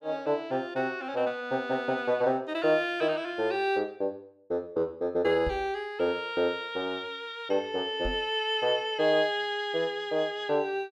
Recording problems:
microphone thump; at 5.5 s and at 8 s; peak -3 dB vs average level

